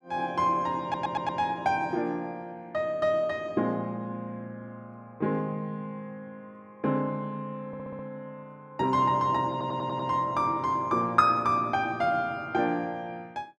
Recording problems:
audio stuttering; at 1 s, at 7.5 s and at 9.5 s

